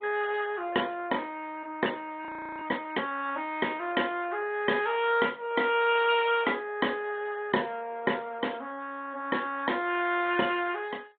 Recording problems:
treble cut off; nothing above 4 kHz
lossy compression; MP2, log-spectral distance 4 dB
frozen audio; at 2.5 s

